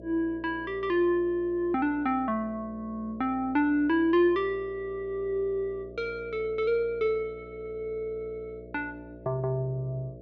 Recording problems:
electrical hum; 60 Hz, harmonics up to 660 Hz, SNR 18 dB

